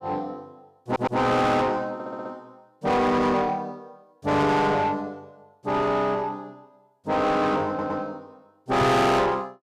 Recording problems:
distorted audio; soft clipping, signal-to-distortion ratio 7 dB
audio stuttering; at 1 s, at 2 s and at 7.5 s
microphone thump; at 9 s; peak +4 dB vs average level

